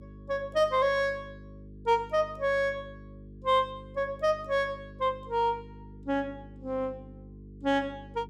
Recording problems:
mains hum; 50 Hz, harmonics up to 450 Hz, SNR 18 dB

